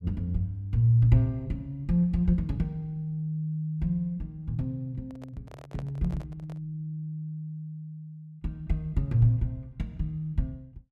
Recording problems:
handling noise; from 5 to 6.5 s; peak -10 dB vs average level

